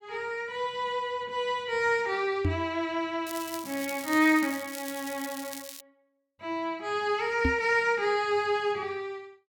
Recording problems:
microphone bump; at 2.5 s and at 7.5 s; peak +4 dB vs average level
crackle; from 3.5 to 6 s; loose cable, SNR 12 dB

